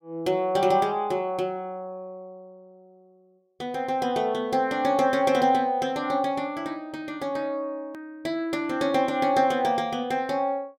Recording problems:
hard cut with a click; at 8 s

